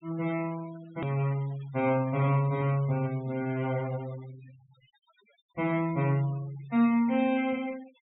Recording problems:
low-pass filter; nothing above 3.8 kHz
denoising artefacts; signal-to-artefact ratio 22 dB
click at an edit; at 1 s

